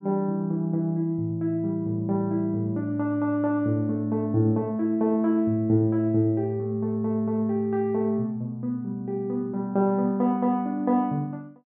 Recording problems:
treble cut off; nothing above 4 kHz

